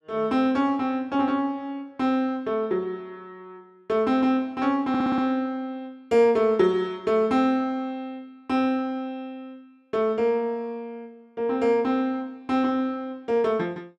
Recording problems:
stutter; at 5 s

